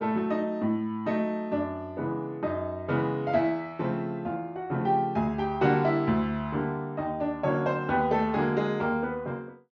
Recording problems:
treble missing; nothing above 6.9 kHz

